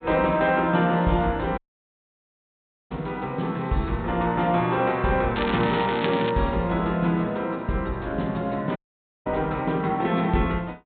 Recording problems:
treble missing; nothing above 4 kHz
dropout; at 1.5 s for 1.5 s and at 9 s
crackling; at 5.5 s; loose cable, SNR 10 dB

